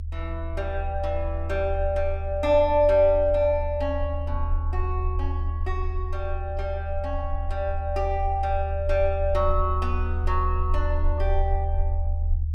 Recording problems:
rumble; below 78 Hz, SNR 3 dB

